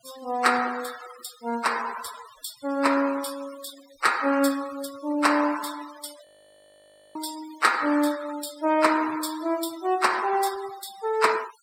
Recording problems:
denoising artefacts; signal-to-artefact ratio 16 dB
frozen audio; at 6.5 s for 1 s

